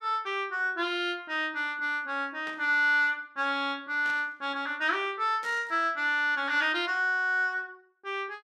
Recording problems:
static burst; at 2.5 s, at 4 s and at 5.5 s; peak -12 dB vs average level

